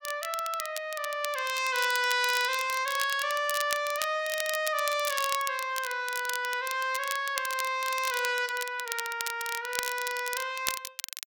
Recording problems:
crackling; vinyl, SNR 7 dB

